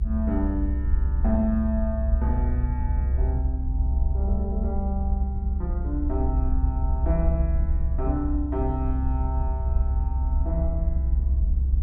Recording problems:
rumble; below 68 Hz, strongest tone 66 Hz, SNR -6 dB

